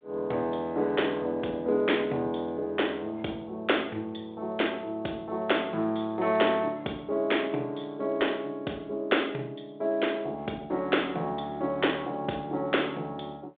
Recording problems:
phone line; 240 Hz to 3.6 kHz, G.726

